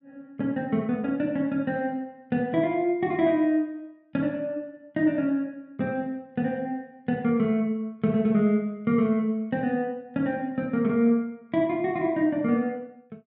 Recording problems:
treble cut off; nothing above 5.5 kHz

